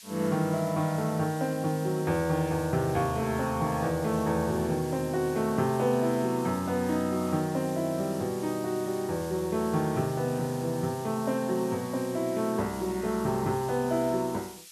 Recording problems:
hiss; slope +6 dB per octave, SNR 17 dB

